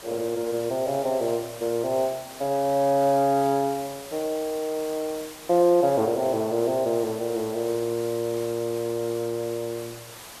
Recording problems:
background hiss; slope -2 dB per octave, SNR 15 dB

